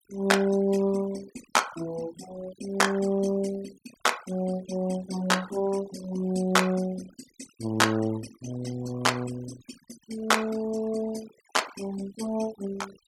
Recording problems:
noise reduction artefacts; signal-to-artefact ratio 18 dB

